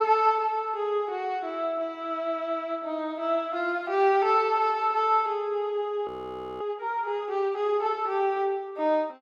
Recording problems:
audio freezing; at 6 s for 0.5 s

